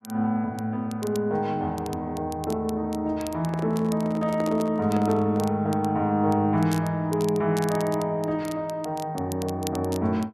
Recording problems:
crackling; vinyl, SNR 19 dB
handling noise; from 3.5 to 5.5 s; peak -6 dB vs average level

